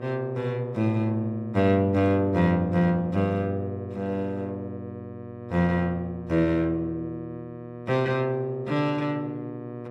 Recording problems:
hum; 60 Hz, harmonics up to 1.8 kHz, SNR 14 dB

